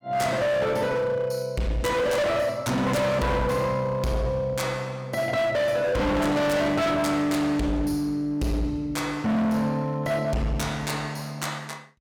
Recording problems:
distortion; hard clipping, signal-to-distortion ratio 6 dB

